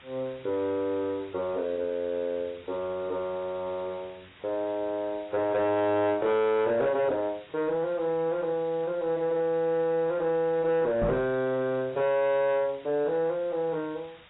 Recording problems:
lossy compression; AAC, log-spectral distance 5 dB, nothing above 3.8 kHz
distortion; soft clipping, signal-to-distortion ratio 11 dB
hiss; SNR 25 dB
microphone bump; at 11 s; peak +2 dB vs average level

